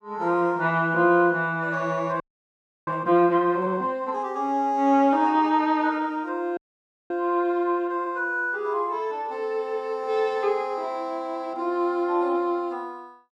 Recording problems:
frozen audio; at 2 s for 0.5 s and at 6.5 s for 0.5 s

